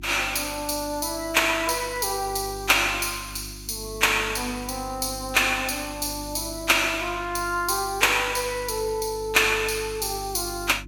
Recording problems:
hum; 50 Hz, harmonics up to 350 Hz, SNR 18 dB

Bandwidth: 18.5 kHz